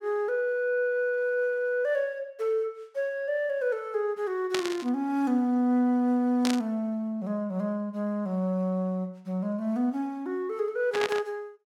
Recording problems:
burst of static; at 4.5 s, at 6.5 s and at 11 s; peak +2 dB vs average level

